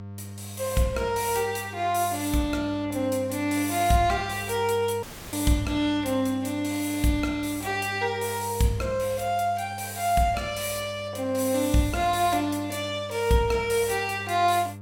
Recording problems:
hum; 50 Hz, harmonics up to 900 Hz, SNR 15 dB
dropout; at 5 s

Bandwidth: 17 kHz